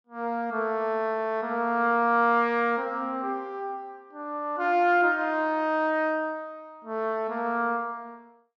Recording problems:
treble cut off; nothing above 8 kHz

